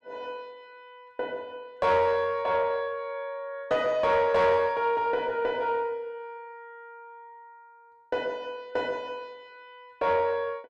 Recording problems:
distorted audio; soft clipping, signal-to-distortion ratio 12 dB

